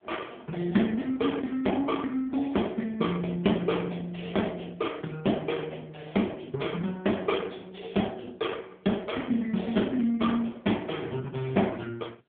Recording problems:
telephone audio; 190 Hz to 3.5 kHz, AMR-NB

